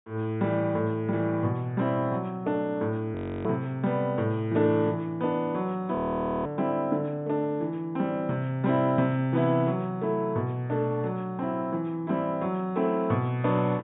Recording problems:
treble missing; nothing above 4 kHz
audio freezing; at 3 s and at 6 s for 0.5 s

